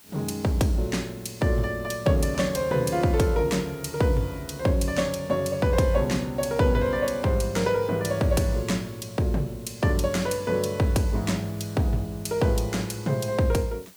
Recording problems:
hiss; slope 0 dB per octave, SNR 24 dB

